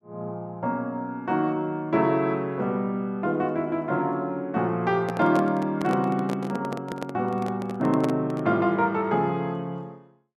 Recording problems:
handling noise; from 5 to 8.5 s; peak -1 dB vs average level

